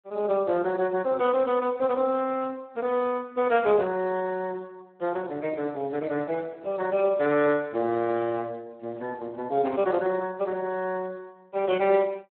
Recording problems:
phone line; 220 Hz to 3.3 kHz, Speex

